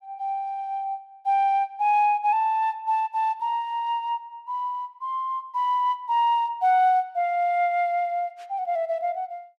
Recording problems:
none

